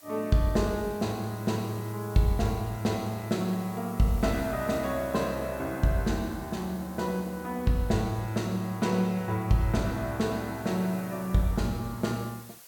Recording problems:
hiss; slope 0 dB per octave, SNR 20 dB

